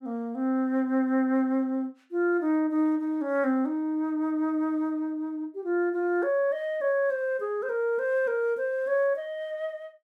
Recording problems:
none

